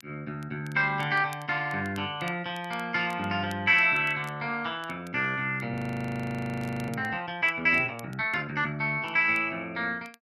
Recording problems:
crackling; vinyl, SNR 27 dB
frozen audio; at 5.5 s for 1 s

